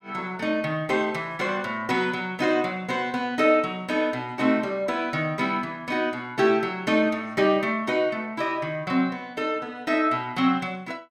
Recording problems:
none

